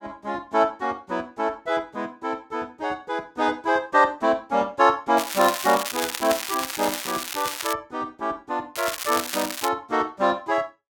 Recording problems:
crackle; from 5 to 7.5 s and at 9 s; loose cable, SNR 5 dB

